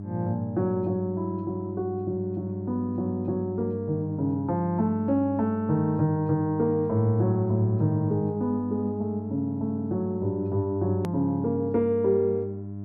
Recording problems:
hum; 50 Hz, harmonics up to 700 Hz, SNR 9 dB
hard cut with a click; at 11 s

